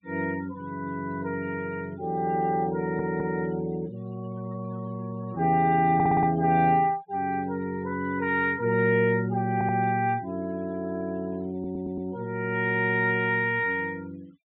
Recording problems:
treble missing; nothing above 4 kHz
denoising artefacts; signal-to-artefact ratio 27 dB
audio stuttering; 4 times, first at 3 s

